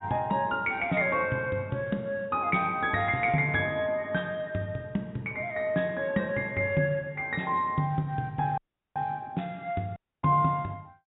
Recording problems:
low-pass filter; nothing above 3.7 kHz
audio cutting out; at 8.5 s and at 10 s

